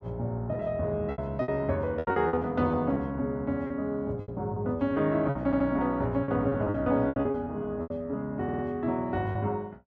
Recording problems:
packet loss; 12% of the sound replaced, filled with repeated pitch periods
audio stuttering; at 5.5 s and at 8.5 s

